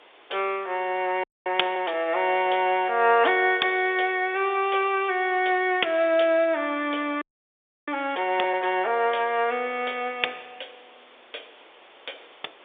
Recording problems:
telephone audio; 300 Hz to 3.6 kHz, G.711
background hiss; SNR 27 dB
frozen audio; at 1 s and at 7 s for 0.5 s

